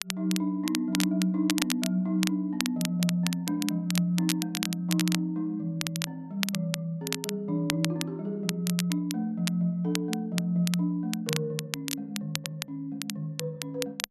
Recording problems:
crackling; vinyl, SNR 5 dB

